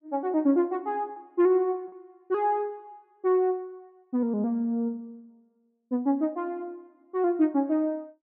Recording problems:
packet loss; 1.3% of the sound replaced, filled with repeated pitch periods

